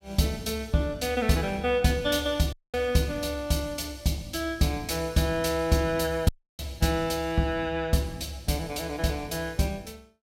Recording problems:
audio cutting out; at 2.5 s and at 6.5 s

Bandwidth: 16.5 kHz